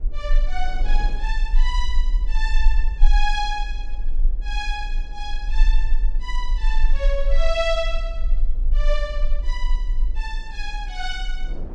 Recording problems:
low-frequency rumble; below 34 Hz, strongest tone 20 Hz, SNR -4 dB
wind on the microphone; below 420 Hz, SNR 17 dB

